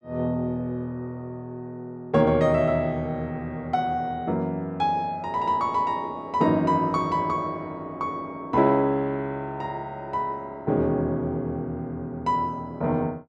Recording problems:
none

